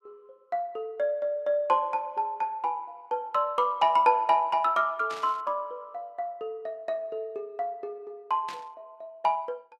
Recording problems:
static burst; at 5 s and at 8.5 s; peak -9 dB vs average level

